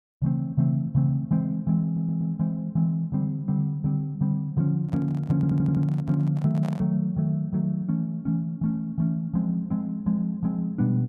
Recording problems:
stutter; at 2 s and at 5.5 s
handling noise; from 5 to 7 s; peak -10 dB vs average level

